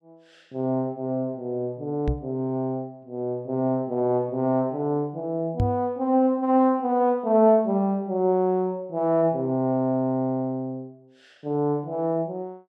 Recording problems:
microphone bump; at 2 s and at 5.5 s; peak +3 dB vs average level

